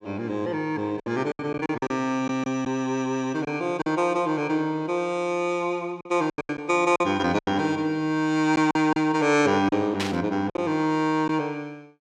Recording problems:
packet loss; 7% of the sound replaced, filled with silence
burst of static; at 10 s; peak 0 dB vs average level

